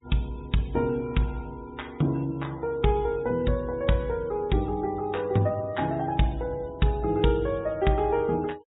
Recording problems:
treble missing; nothing above 4 kHz
noise reduction artefacts; signal-to-artefact ratio 27 dB

